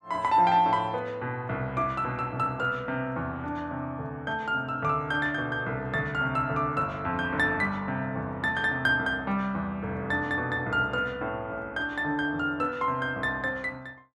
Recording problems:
none

